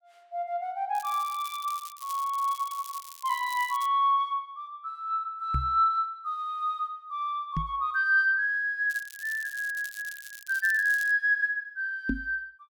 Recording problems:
crackle; from 1 to 4 s and from 9 to 11 s; loose cable, SNR 16 dB
microphone bump; at 5.5 s, at 7.5 s and at 12 s; peak +2 dB vs average level

